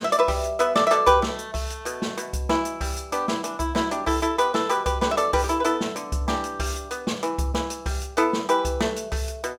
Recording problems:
none

